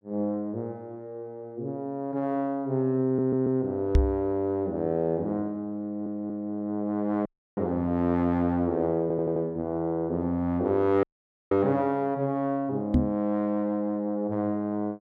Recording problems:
stutter; at 3 s, at 6 s and at 9 s
microphone bump; at 4 s and at 13 s; peak +9 dB vs average level
dropout; at 7.5 s and at 11 s

